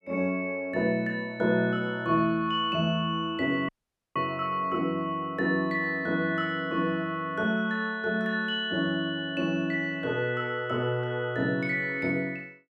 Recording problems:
dropout; at 3.5 s

